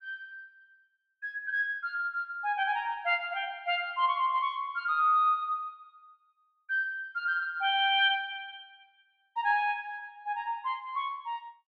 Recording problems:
none

